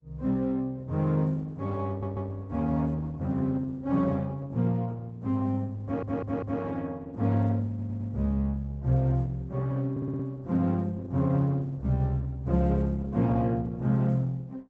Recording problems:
lossy compression; Opus, log-spectral distance 2 dB
stutter; 4 times, first at 2 s

